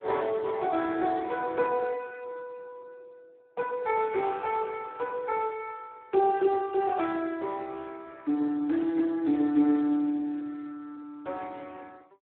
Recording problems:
phone line; 240 Hz to 2.8 kHz, Speex

